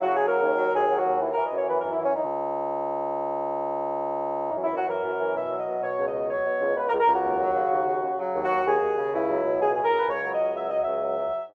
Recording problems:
audio freezing; at 2.5 s for 2.5 s

